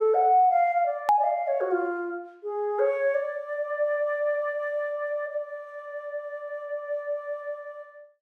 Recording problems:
click at an edit; at 1 s

